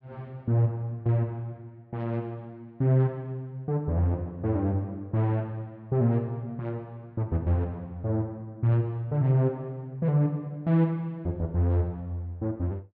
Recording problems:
none

